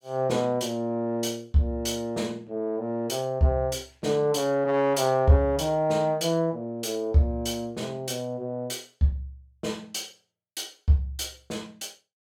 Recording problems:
none

